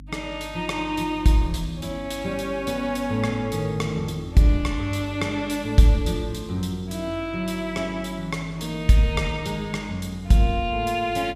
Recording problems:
electrical hum; 50 Hz, harmonics up to 300 Hz, SNR 19 dB

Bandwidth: 15.5 kHz